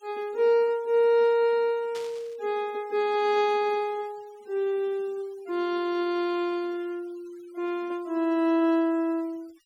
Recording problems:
denoising artefacts; signal-to-artefact ratio 27 dB
static burst; at 2 s; peak -12 dB vs average level

